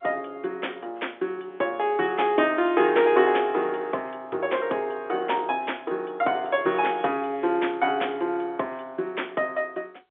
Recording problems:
telephone audio; 320 Hz to 3.6 kHz, G.711

